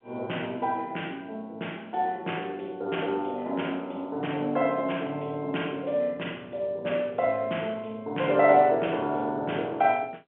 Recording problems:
phone line; 280 Hz to 3.3 kHz, G.711

